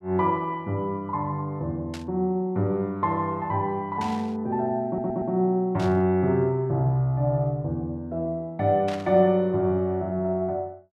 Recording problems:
burst of static; 4 times, first at 2 s; peak -8 dB vs average level
stutter; at 5 s

